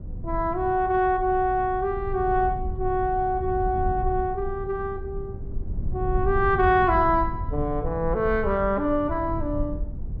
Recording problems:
rumble; below 96 Hz, SNR 9 dB

